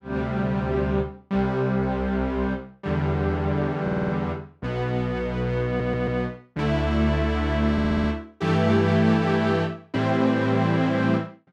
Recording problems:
audio stuttering; at 4 s, at 5.5 s and at 7.5 s

